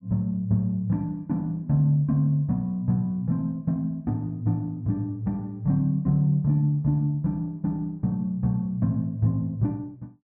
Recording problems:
none

